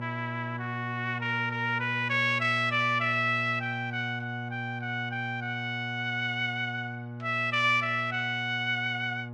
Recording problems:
electrical hum; 60 Hz, harmonics up to 1.2 kHz, SNR 9 dB

